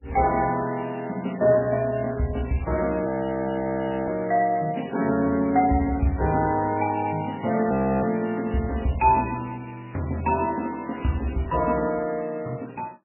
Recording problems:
lossy codec; MP3, log-spectral distance 6 dB, nothing above 2.6 kHz
audio freezing; at 3 s for 1 s and at 7.5 s

